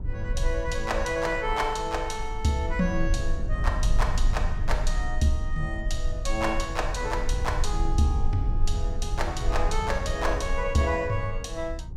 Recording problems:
rumble; below 54 Hz, strongest tone 20 Hz, SNR 2 dB

